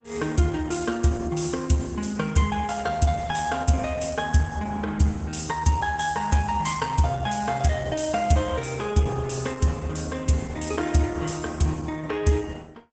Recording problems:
lossy compression; Opus, log-spectral distance 5 dB, nothing above 8 kHz

